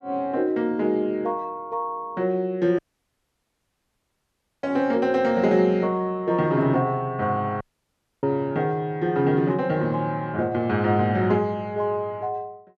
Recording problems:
dropout; at 3 s for 2 s and at 7.5 s for 0.5 s

